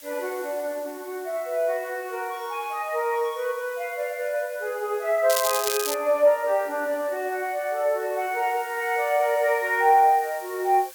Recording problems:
background hiss; SNR 19 dB
crackle; at 5.5 s; loose cable, SNR 3 dB

